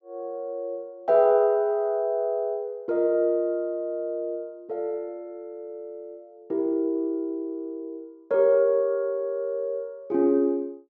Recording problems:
treble missing; nothing above 8 kHz

